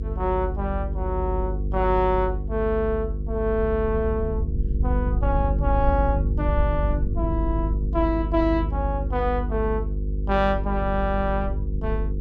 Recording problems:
hum; 50 Hz, harmonics up to 500 Hz, SNR 2 dB
low-frequency rumble; below 76 Hz, SNR 6 dB

